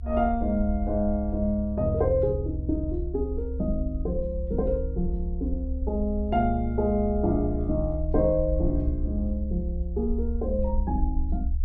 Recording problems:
low-frequency rumble; below 66 Hz, SNR 4 dB

